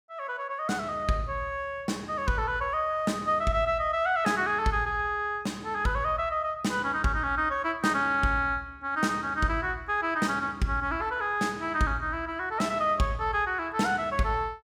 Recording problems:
none

